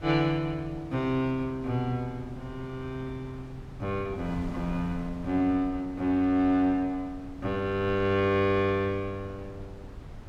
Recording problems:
wind on the microphone; below 220 Hz, SNR 16 dB

